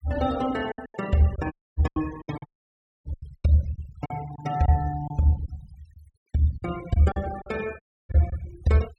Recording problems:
noise reduction artefacts; signal-to-artefact ratio 19 dB
lost packets; 11% of the sound replaced, filled with silence
audio cutting out; at 1.5 s, at 2.5 s for 0.5 s and at 8 s

